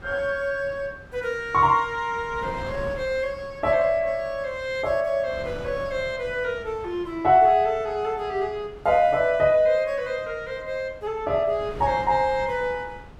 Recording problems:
wind on the microphone; below 610 Hz, SNR 19 dB

